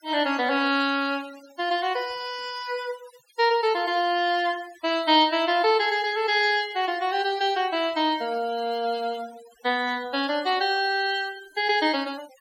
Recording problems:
denoising artefacts; signal-to-artefact ratio 20 dB

